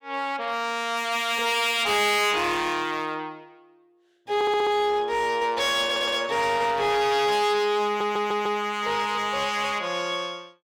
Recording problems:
distorted audio; hard clipping, signal-to-distortion ratio 7 dB
stutter; at 4.5 s, at 6 s and at 8 s

